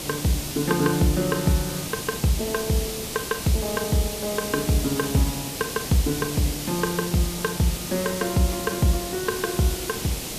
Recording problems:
background hiss; SNR 5 dB

